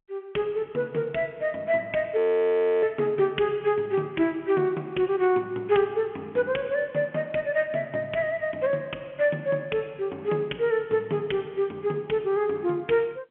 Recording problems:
phone line; 170 Hz to 3.3 kHz, G.711
audio freezing; at 2 s for 0.5 s

